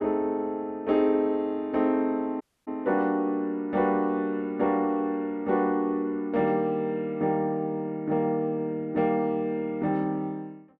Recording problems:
dropout; at 2.5 s

